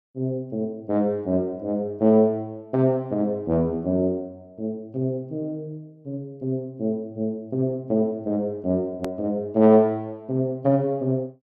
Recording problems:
edit click; at 9 s

